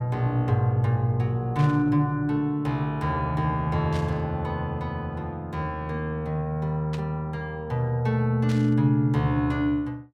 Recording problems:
static burst; 4 times, first at 1.5 s; peak -10 dB vs average level

